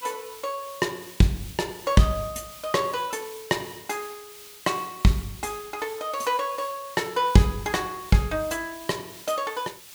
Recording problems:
hiss; slope +2 dB per octave, SNR 16 dB

